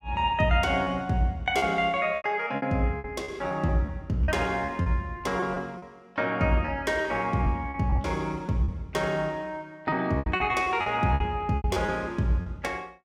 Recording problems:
packet loss; 10% of the sound replaced, filled with repeated pitch periods

